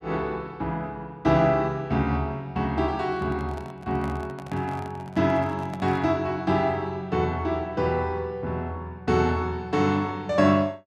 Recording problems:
handling noise; from 3 to 6 s; peak -8 dB vs average level

